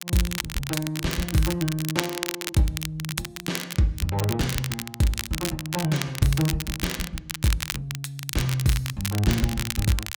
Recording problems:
crackle; vinyl, SNR 5 dB

